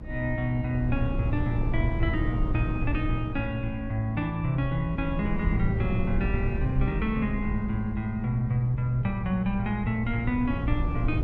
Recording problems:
rumble; below 110 Hz, SNR 4 dB

